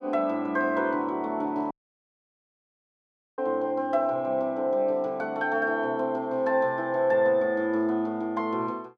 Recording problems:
audio cutting out; at 1.5 s for 1.5 s

